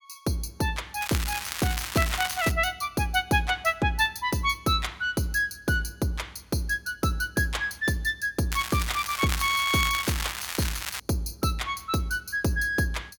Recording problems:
crackle; from 1 to 2.5 s and from 8.5 to 11 s; loose cable, SNR 6 dB

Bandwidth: 17 kHz